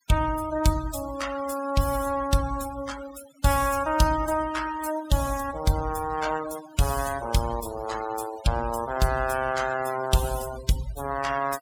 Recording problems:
noise reduction artefacts; signal-to-artefact ratio 13 dB

